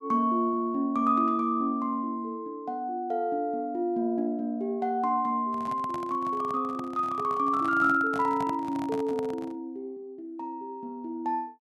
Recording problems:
handling noise; from 5.5 to 9.5 s; peak -6 dB vs average level

